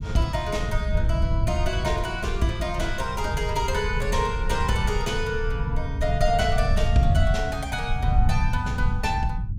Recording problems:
low-frequency rumble; below 96 Hz, SNR 0 dB

